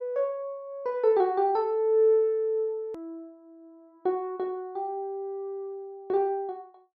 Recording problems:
edit click; at 3 s

